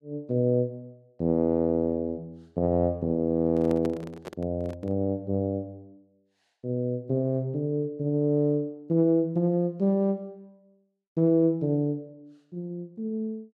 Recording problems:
microphone handling noise; from 3.5 to 5 s; peak -6 dB vs average level

